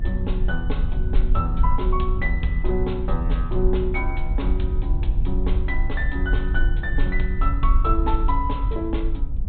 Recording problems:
treble cut off; nothing above 4 kHz
low-frequency rumble; below 54 Hz, SNR -3 dB

